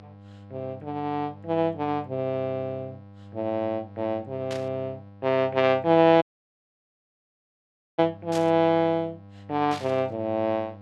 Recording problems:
hum; 50 Hz, harmonics up to 1.3 kHz, SNR 20 dB
burst of static; at 4.5 s, at 8.5 s and at 9.5 s; peak -7 dB vs average level
dropout; at 6 s for 2 s

